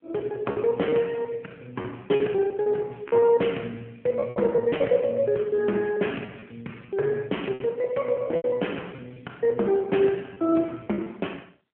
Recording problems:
phone line; 240 Hz to 3.2 kHz, AMR-NB
packet loss; 8% of the sound replaced, filled with repeated pitch periods

